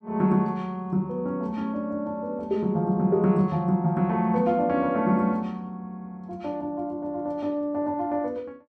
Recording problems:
none

